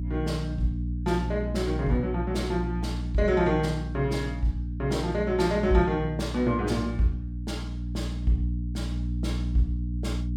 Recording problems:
hum; 60 Hz, harmonics up to 300 Hz, SNR 4 dB

